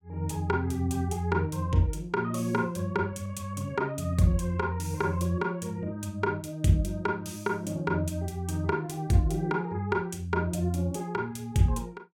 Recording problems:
none

